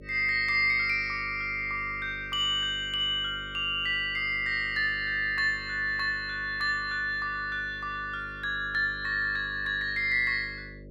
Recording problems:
hum; 50 Hz, harmonics up to 600 Hz, SNR 19 dB

